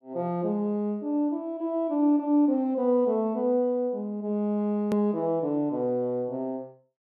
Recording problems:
edit click; at 5 s

